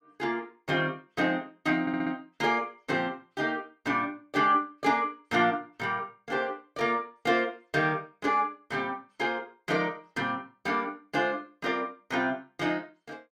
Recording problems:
audio stuttering; at 2 s

